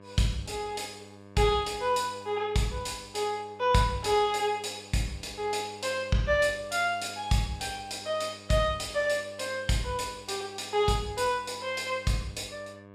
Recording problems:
hum; 50 Hz, harmonics up to 2.2 kHz, SNR 21 dB

